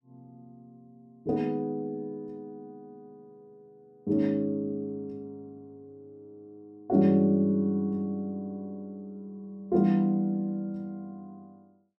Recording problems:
none

